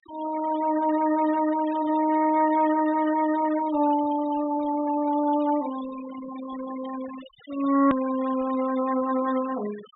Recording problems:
low-pass filter; nothing above 4 kHz
denoising artefacts; signal-to-artefact ratio 19 dB
hard cut with a click; at 8 s

